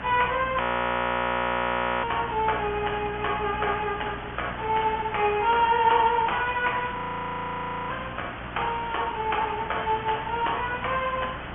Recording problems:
treble cut off; nothing above 3.3 kHz
codec artefacts; MP3, log-spectral distance 15 dB
electrical hum; 60 Hz, harmonics up to 900 Hz, SNR 18 dB
background hiss; SNR 10 dB
frozen audio; at 0.5 s for 1.5 s and at 7 s for 1 s

